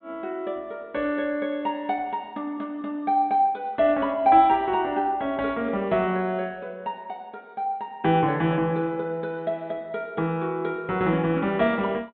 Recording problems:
treble missing; nothing above 4 kHz

